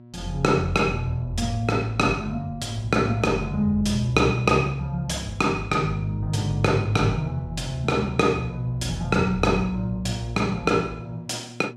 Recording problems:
hum; 60 Hz, harmonics up to 960 Hz, SNR 20 dB

